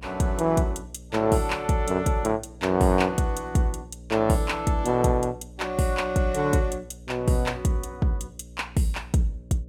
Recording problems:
electrical hum; 60 Hz, harmonics up to 600 Hz, SNR 20 dB

